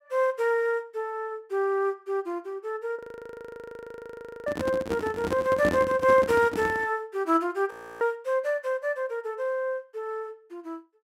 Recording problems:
audio freezing; at 3 s for 1.5 s and at 7.5 s
microphone handling noise; from 4.5 to 7 s; peak +2 dB vs average level

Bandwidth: 16 kHz